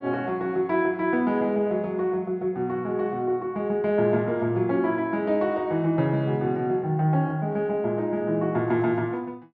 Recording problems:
none

